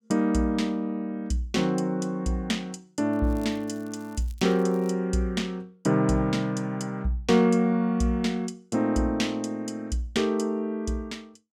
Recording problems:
crackle; from 3 to 5 s; loose cable, SNR 28 dB

